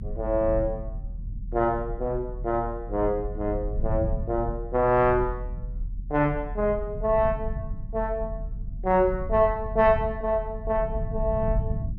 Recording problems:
low-frequency rumble; below 88 Hz, strongest tone 40 Hz, SNR 8 dB

